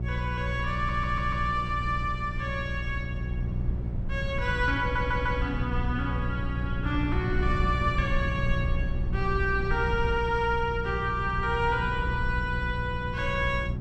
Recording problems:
hum; 60 Hz, harmonics up to 540 Hz, SNR 4 dB
rumble; below 100 Hz, SNR 6 dB
stutter; at 1 s and at 5 s

